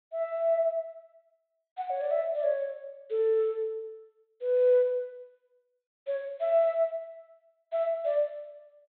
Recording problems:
treble cut off; nothing above 4 kHz

